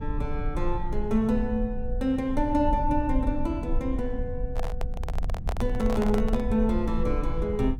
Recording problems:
low-frequency rumble; below 58 Hz, SNR 5 dB
handling noise; from 4.5 to 6.5 s; peak -2 dB vs average level

